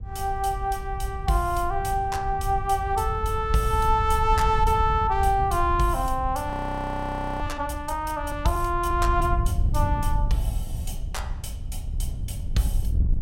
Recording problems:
wind on the microphone; below 86 Hz, SNR 5 dB
frozen audio; at 6.5 s for 1 s

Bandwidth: 16 kHz